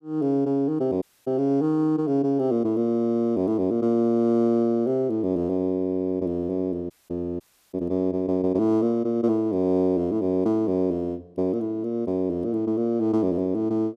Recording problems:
dropout; at 1 s, at 7 s and at 7.5 s

